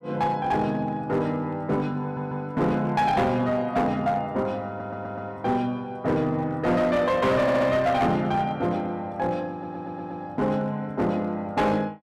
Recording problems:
distortion; hard clipping, uneven, signal-to-distortion ratio 10 dB
audio stuttering; 4 times, first at 2 s

